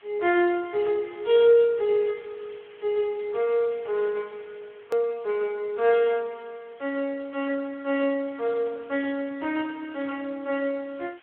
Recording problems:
telephone audio; 240 Hz to 3.4 kHz, Speex
background hiss; SNR 27 dB
click at an edit; at 5 s

